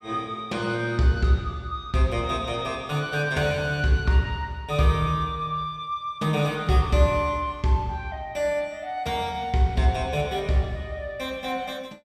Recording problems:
none

